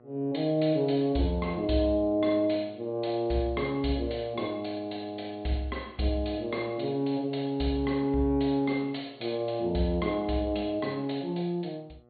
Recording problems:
low-pass filter; nothing above 4.4 kHz
electrical hum; 60 Hz, harmonics up to 1.4 kHz, SNR 29 dB

